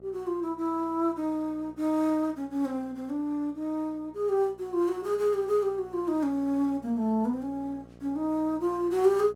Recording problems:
hum; 60 Hz, harmonics up to 1.3 kHz, SNR 24 dB

